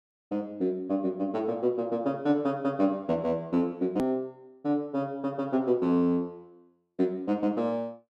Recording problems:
edit click; at 4 s

